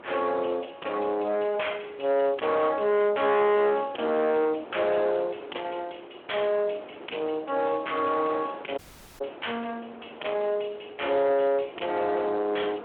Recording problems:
telephone audio; 280 Hz to 3.3 kHz, Speex
distortion; soft clipping, signal-to-distortion ratio 8 dB
wind on the microphone; below 1.1 kHz, SNR 19 dB
dropout; at 9 s

